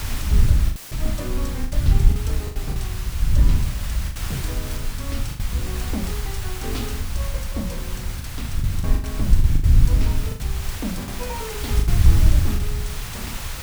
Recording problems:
background hiss; slope -1 dB per octave, SNR 1 dB
wind on the microphone; below 84 Hz, SNR -10 dB
packet loss; 7% of the sound replaced, filled with the last packet
dropout; at 1 s; filled with static

